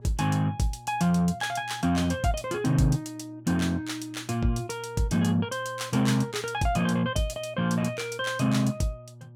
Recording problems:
hum; 60 Hz, harmonics up to 600 Hz, SNR 21 dB

